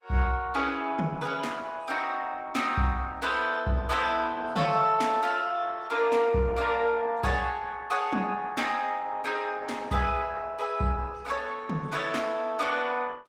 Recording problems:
codec artefacts; Opus, log-spectral distance 4 dB, nothing above 19 kHz

